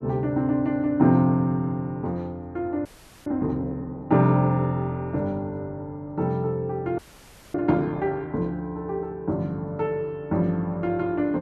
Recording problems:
frozen audio; at 3 s and at 7 s for 0.5 s

